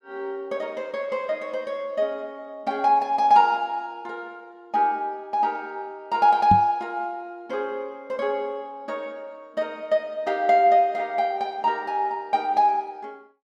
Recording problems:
microphone thump; at 6.5 s; peak +3 dB vs average level

